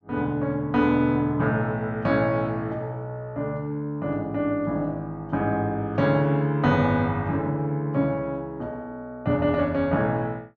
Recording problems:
none

